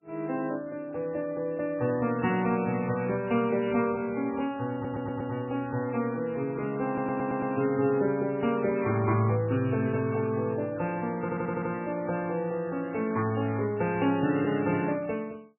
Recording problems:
lossy codec; MP3, log-spectral distance 3 dB, nothing above 2.4 kHz
stutter; at 4.5 s, at 7 s and at 11 s

